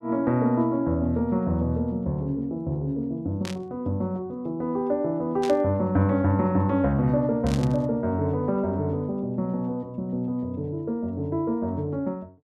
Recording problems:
static burst; at 3.5 s, at 5.5 s and at 7.5 s; peak -6 dB vs average level

